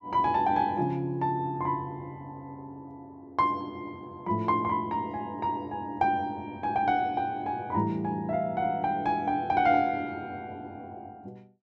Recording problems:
none

